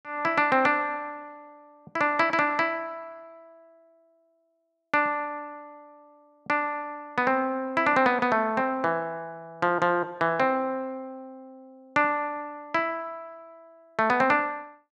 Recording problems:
none

